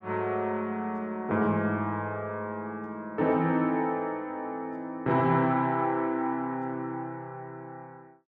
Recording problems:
none

